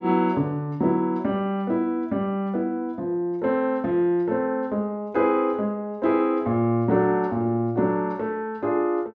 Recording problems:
none

